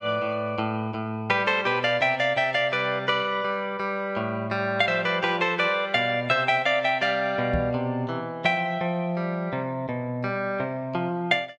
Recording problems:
knock on the microphone; at 7.5 s; peak 0 dB vs average level

